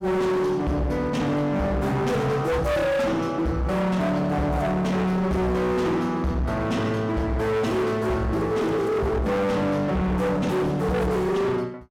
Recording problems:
distorted audio; hard clipping, signal-to-distortion ratio 7 dB

